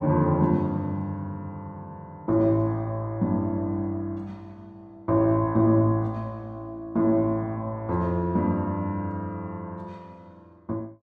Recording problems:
none

